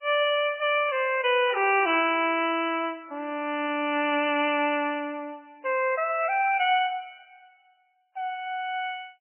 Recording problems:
codec artefacts; MP3, log-spectral distance 4 dB, nothing above 2.4 kHz

